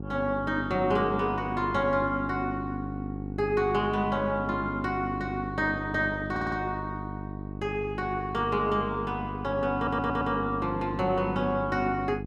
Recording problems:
hum; 50 Hz, harmonics up to 850 Hz, SNR 8 dB
stutter; at 6.5 s and at 10 s

